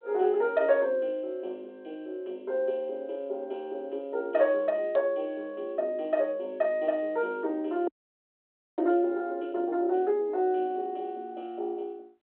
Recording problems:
telephone audio; 260 Hz to 3.7 kHz, G.726
frozen audio; at 8 s for 1 s

